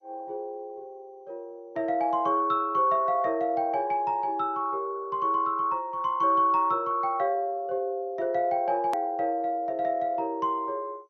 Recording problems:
codec artefacts; MP2, log-spectral distance 2 dB, nothing above 13.1 kHz
hard cut with a click; at 9 s

